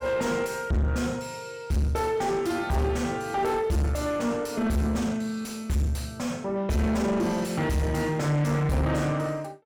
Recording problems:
distortion; soft clipping, signal-to-distortion ratio 6 dB

